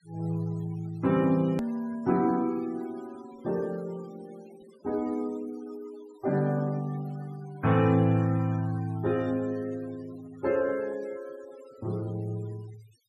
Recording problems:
noise reduction artefacts; signal-to-artefact ratio 22 dB
hard cut with a click; at 1.5 s

